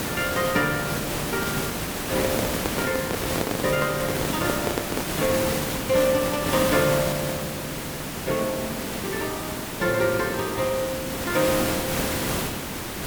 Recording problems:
background hiss; slope -4 dB per octave, SNR 1 dB
microphone handling noise; from 2 to 5 s; peak +3 dB vs average level

